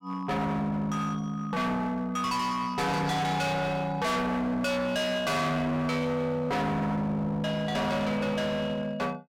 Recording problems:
distorted audio; hard clipping, uneven, signal-to-distortion ratio 5 dB
static burst; at 6 s and at 8 s; peak -15 dB vs average level

